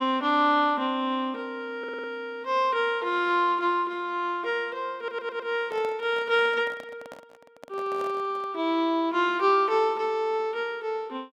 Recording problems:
audio stuttering; at 2 s and at 5 s
handling noise; from 5.5 to 8.5 s; peak -10 dB vs average level

